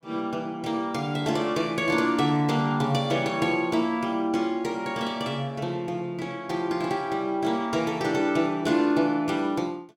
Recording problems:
none

